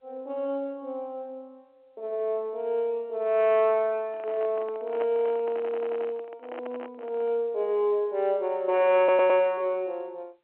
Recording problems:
phone line; 300 Hz to 3.3 kHz, G.711
handling noise; from 4 to 7.5 s; peak -7 dB vs average level
audio stuttering; at 5.5 s and at 9 s

